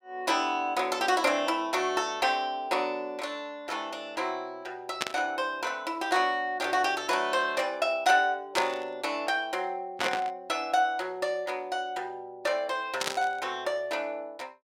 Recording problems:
burst of static; 4 times, first at 5 s; peak +4 dB vs average level

